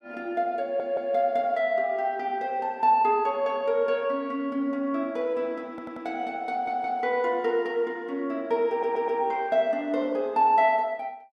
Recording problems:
audio stuttering; 4 times, first at 0.5 s

